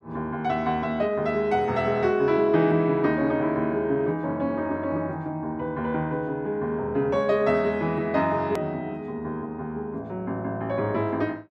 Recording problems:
click at an edit; at 8.5 s

